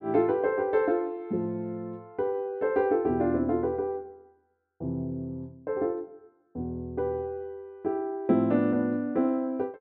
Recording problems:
none

